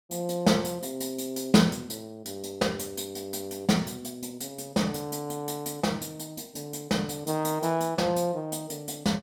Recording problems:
none

